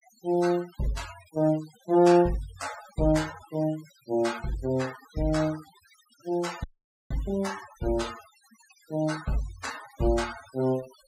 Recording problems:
denoising artefacts; signal-to-artefact ratio 17 dB
dropout; at 6.5 s

